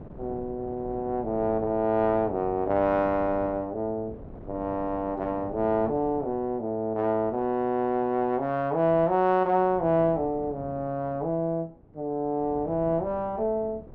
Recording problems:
wind noise; below 410 Hz, SNR 18 dB

